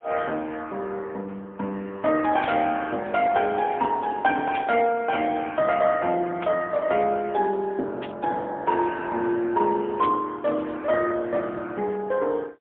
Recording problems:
telephone audio; 260 Hz to 2.3 kHz, AMR-NB, then MP3
static burst; 5 times, first at 2.5 s; peak -7 dB vs average level

